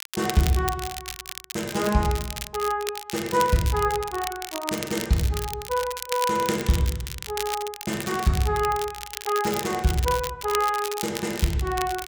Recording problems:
crackle; vinyl, SNR 8 dB

